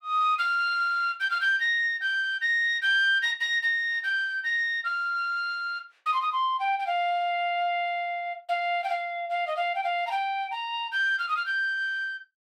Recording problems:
none

